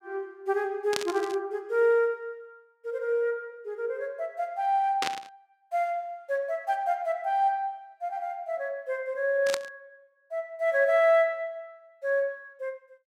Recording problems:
static burst; at 1 s, at 5 s and at 9.5 s; peak +3 dB vs average level

